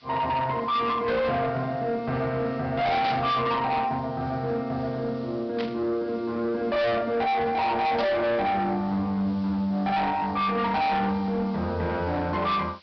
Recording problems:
low-pass filter; nothing above 5.5 kHz
distorted audio; soft clipping, signal-to-distortion ratio 7 dB
hiss; SNR 27 dB
burst of static; at 3 s, at 5.5 s and at 8 s; peak -4 dB vs average level

